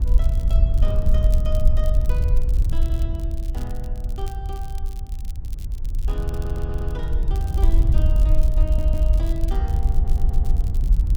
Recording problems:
wind on the microphone; below 60 Hz, SNR -12 dB
crackling; vinyl, SNR 13 dB
stutter; 4 times, first at 3 s

